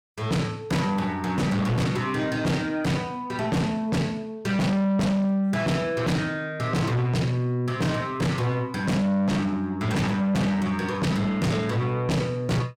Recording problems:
distortion; soft clipping, signal-to-distortion ratio 6 dB

